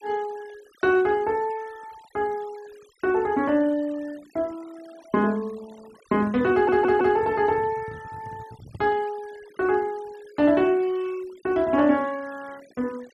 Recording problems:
denoising artefacts; signal-to-artefact ratio 26 dB
handling noise; from 6 to 9 s; peak -11 dB vs average level
audio stuttering; at 6.5 s

